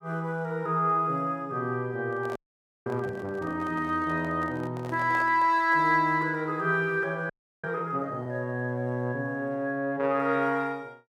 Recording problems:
microphone handling noise; from 2 to 6 s; peak -8 dB vs average level
audio freezing; at 2.5 s for 0.5 s and at 7.5 s

